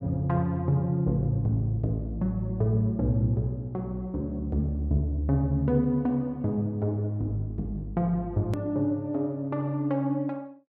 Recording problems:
hard cut with a click; at 8.5 s

